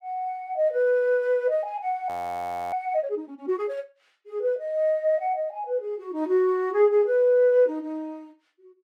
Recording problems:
frozen audio; at 2 s for 0.5 s

